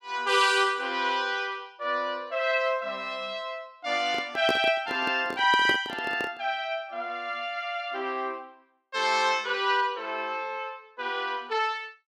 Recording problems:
handling noise; from 4 to 6.5 s; peak +2 dB vs average level

